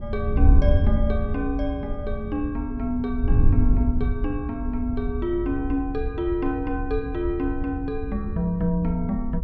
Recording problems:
wind on the microphone; below 80 Hz, SNR 0 dB

